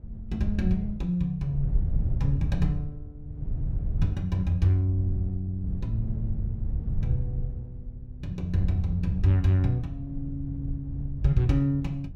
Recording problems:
wind on the microphone; below 100 Hz, SNR 5 dB

